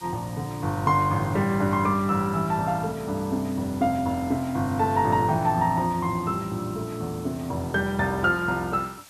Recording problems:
background hiss; slope 0 dB per octave, SNR 21 dB

